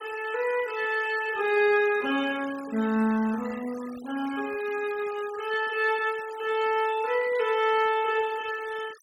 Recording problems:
noise reduction artefacts; signal-to-artefact ratio 18 dB

